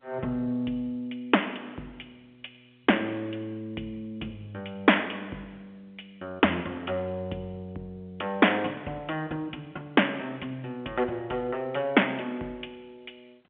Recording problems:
phone line; 260 Hz to 3.4 kHz, G.711

